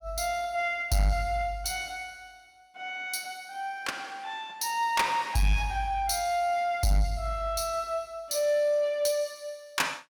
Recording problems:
distorted audio; soft clipping, signal-to-distortion ratio 11 dB

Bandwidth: 18 kHz